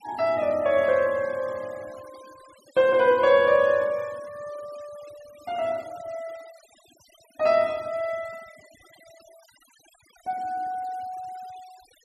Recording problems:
noise reduction artefacts; signal-to-artefact ratio 26 dB

